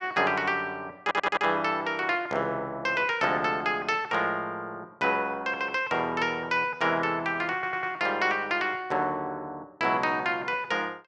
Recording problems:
audio stuttering; at 1 s and at 7.5 s

